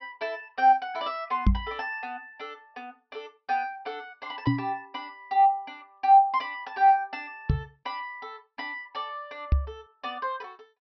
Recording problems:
treble cut off; nothing above 5.8 kHz
microphone thump; 4 times, first at 1.5 s; peak +8 dB vs average level

